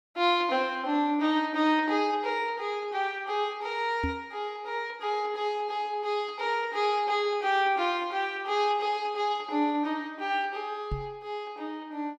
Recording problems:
knock on the microphone; at 4 s and at 11 s; peak 0 dB vs average level

